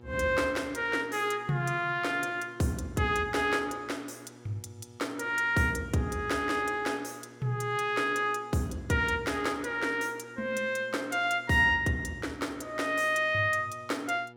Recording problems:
electrical hum; 60 Hz, harmonics up to 1.8 kHz, SNR 23 dB

